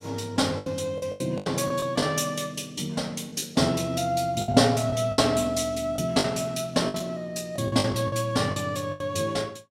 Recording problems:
packet loss; 10% of the sound replaced, filled with the last packet

